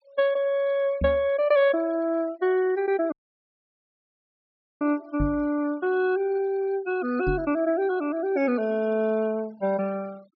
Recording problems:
treble cut off; nothing above 5.5 kHz
noise reduction artefacts; signal-to-artefact ratio 25 dB
microphone thump; at 1 s, at 5 s and at 7.5 s; peak 0 dB vs average level
audio cutting out; at 3 s for 1.5 s

